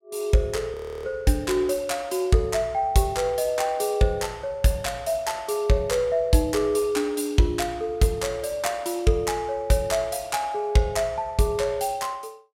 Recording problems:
audio freezing; at 0.5 s

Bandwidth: 16 kHz